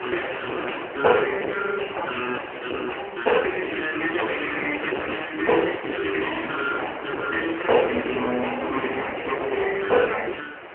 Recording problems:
telephone audio; 280 Hz to 3.1 kHz, AMR-NB
distortion; hard clipping, signal-to-distortion ratio 11 dB
wind on the microphone; below 2.3 kHz, SNR 10 dB

